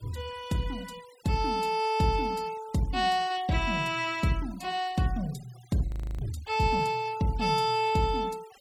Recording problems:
denoising artefacts; signal-to-artefact ratio 23 dB
audio freezing; at 6 s

